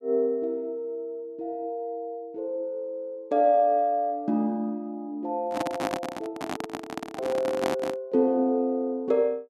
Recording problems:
microphone handling noise; from 5.5 to 8 s; peak +2 dB vs average level

